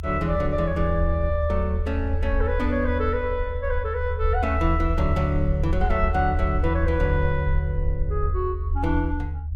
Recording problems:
rumble; below 78 Hz, SNR 1 dB

